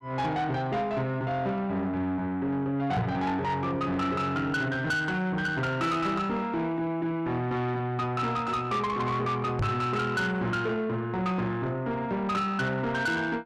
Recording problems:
distortion; soft clipping, signal-to-distortion ratio 10 dB
microphone bump; at 3 s and at 9.5 s; peak +3 dB vs average level

